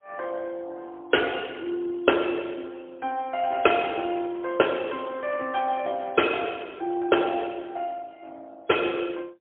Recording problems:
telephone audio; 280 Hz to 3.3 kHz, AMR-NB, then MP3

